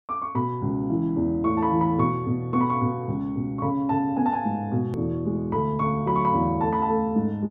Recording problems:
click at an edit; at 5 s

